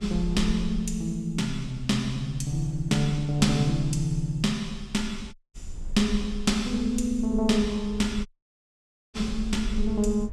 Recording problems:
rumble; below 50 Hz, SNR 12 dB
audio cutting out; at 5.5 s and at 8.5 s for 1 s

